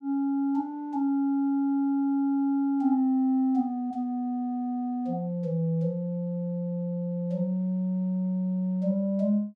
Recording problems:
none

